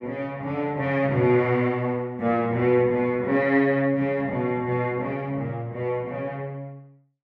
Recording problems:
none

